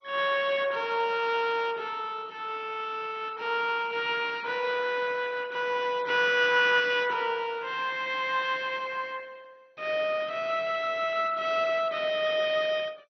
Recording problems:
codec artefacts; MP2, log-spectral distance 4 dB, nothing above 5.7 kHz

